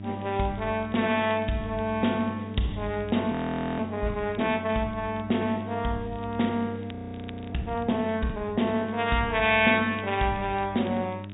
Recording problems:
treble cut off; nothing above 3.7 kHz
codec artefacts; MP2, log-spectral distance 4 dB
mains hum; 50 Hz, harmonics up to 700 Hz, SNR 12 dB
crackle; vinyl, SNR 27 dB
audio freezing; at 3.5 s and at 7 s for 0.5 s

